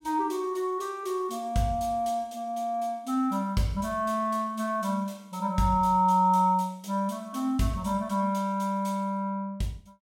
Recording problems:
none

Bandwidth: 16 kHz